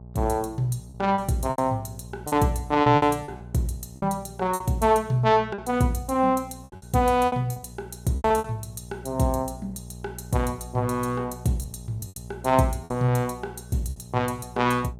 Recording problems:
electrical hum; 60 Hz, harmonics up to 840 Hz, SNR 17 dB
lost packets; 9% of the sound replaced, filled with repeated pitch periods

